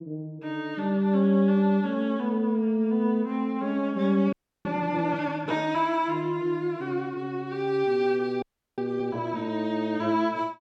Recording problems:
frozen audio; at 4.5 s and at 8.5 s

